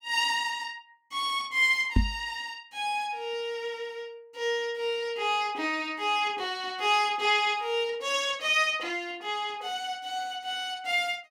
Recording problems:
microphone bump; at 2 s; peak +7 dB vs average level

